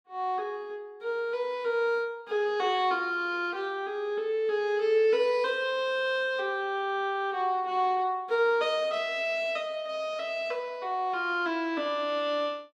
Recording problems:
none

